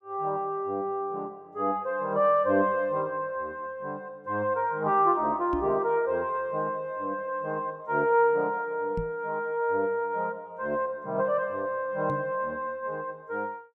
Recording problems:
microphone thump; at 5.5 s, at 9 s and at 12 s; peak -2 dB vs average level

